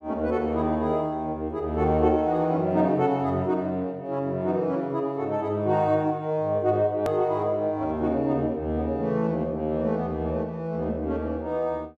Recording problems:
edit click; at 7 s

